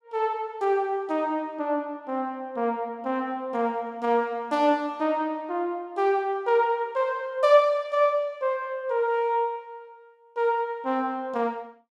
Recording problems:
none

